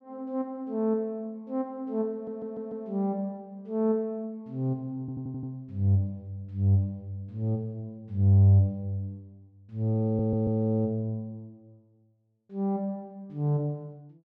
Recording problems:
stutter; at 2 s, at 5 s and at 10 s

